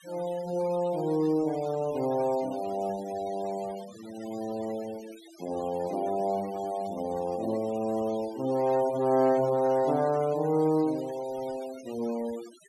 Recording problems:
denoising artefacts; signal-to-artefact ratio 19 dB

